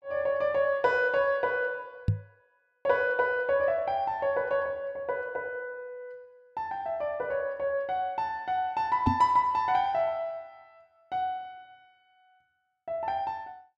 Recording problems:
microphone thump; at 2 s and at 9 s; peak +7 dB vs average level

